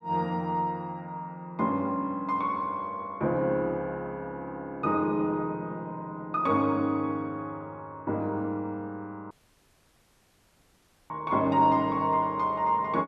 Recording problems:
audio cutting out; at 9.5 s for 2 s

